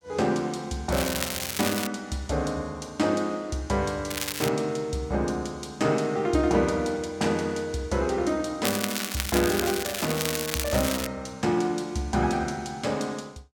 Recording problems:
crackle; at 1 s, at 4 s and from 8.5 to 11 s; loose cable, SNR 3 dB

